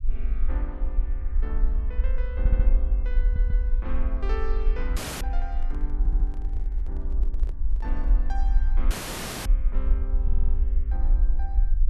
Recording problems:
rumble; below 48 Hz, SNR -13 dB
audio stuttering; 4 times, first at 2.5 s
audio cutting out; at 5 s and at 9 s for 0.5 s
handling noise; from 5.5 to 8.5 s; peak -3 dB vs average level

